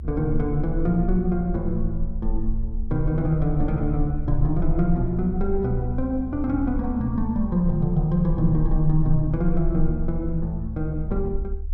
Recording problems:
low-frequency rumble; below 52 Hz, strongest tone 22 Hz, SNR 6 dB

